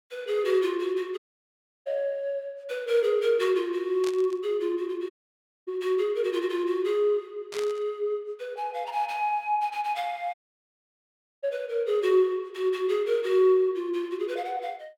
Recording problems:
audio cutting out; at 1 s for 0.5 s, at 5 s for 0.5 s and at 10 s for 1 s
burst of static; at 4 s and at 7.5 s; peak -7 dB vs average level

